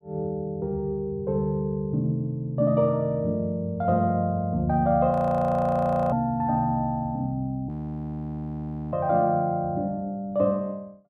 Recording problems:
frozen audio; at 5 s for 1 s and at 7.5 s for 1 s

